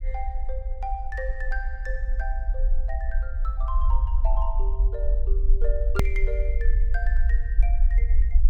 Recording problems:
low-frequency rumble; below 48 Hz, SNR -10 dB
hard cut with a click; at 6 s

